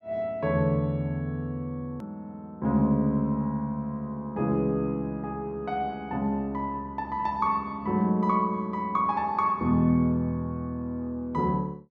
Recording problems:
edit click; at 2 s

